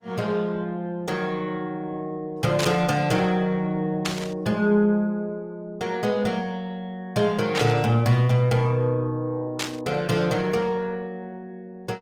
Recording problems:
lossy compression; Opus, log-spectral distance 2 dB, nothing above 19 kHz
burst of static; 4 times, first at 2.5 s; peak +2 dB vs average level

